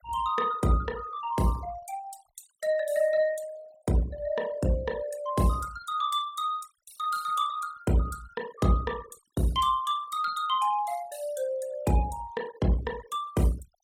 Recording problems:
noise reduction artefacts; signal-to-artefact ratio 19 dB

